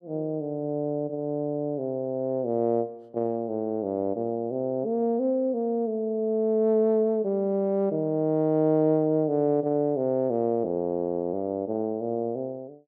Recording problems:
none

